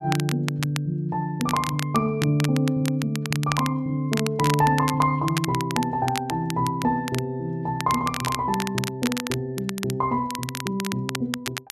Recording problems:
crackle; vinyl, SNR 8 dB

